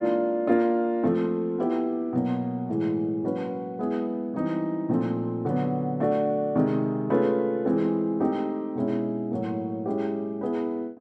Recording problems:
none

